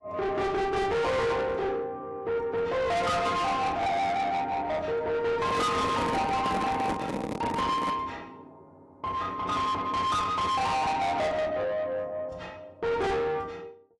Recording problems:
codec artefacts; AAC, log-spectral distance 2 dB, nothing above 11.3 kHz
distorted audio; soft clipping, signal-to-distortion ratio 6 dB
microphone handling noise; from 5.5 to 8 s; peak +2 dB vs average level

